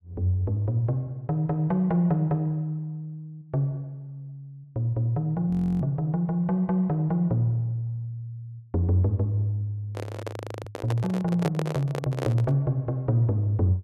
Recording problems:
audio freezing; at 5.5 s and at 10 s
handling noise; from 10 to 13 s; peak 0 dB vs average level

